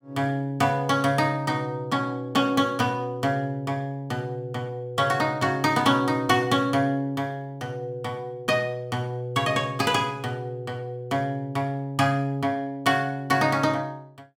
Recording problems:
none

